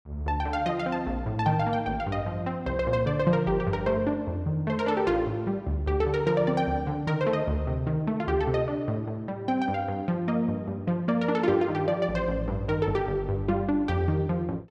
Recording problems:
none

